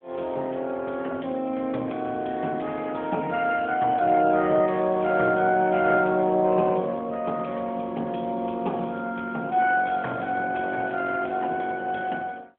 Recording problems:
phone line; 190 Hz to 3.3 kHz, AMR-NB

